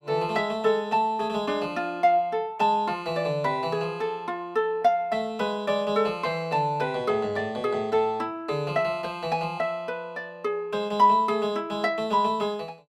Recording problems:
none

